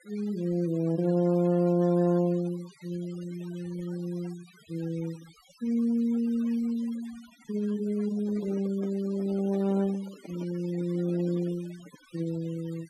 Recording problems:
denoising artefacts; signal-to-artefact ratio 22 dB
microphone handling noise; from 8 to 12 s; peak -10 dB vs average level

